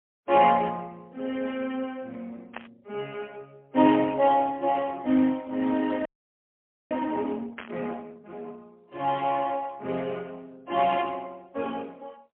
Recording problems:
telephone audio; 220 Hz to 3.1 kHz, AMR-NB, then MP3
burst of static; at 2.5 s and at 7.5 s; peak -6 dB vs average level
frozen audio; at 6 s for 1 s

